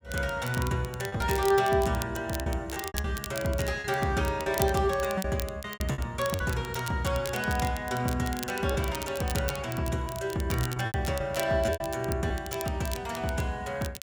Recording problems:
crackle; vinyl, SNR 12 dB
lost packets; 8% of the sound replaced, filled with repeated pitch periods

